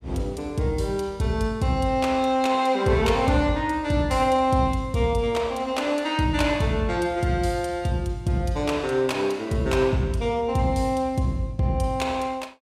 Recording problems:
none

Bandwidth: 15.5 kHz